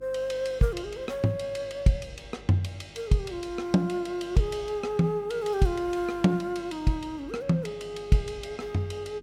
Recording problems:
electrical hum; 50 Hz, harmonics up to 350 Hz, SNR 25 dB

